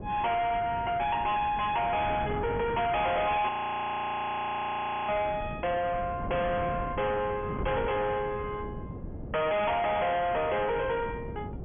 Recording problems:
treble missing; nothing above 3.4 kHz
distortion; soft clipping, signal-to-distortion ratio 7 dB
wind on the microphone; below 430 Hz, SNR 10 dB
audio freezing; at 3.5 s for 1.5 s

